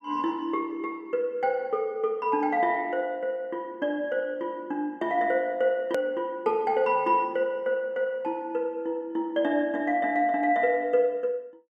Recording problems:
click at an edit; at 6 s

